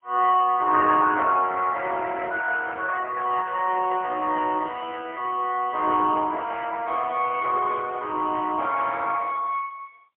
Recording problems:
phone line; 260 Hz to 2.9 kHz, AMR-NB, then MP3

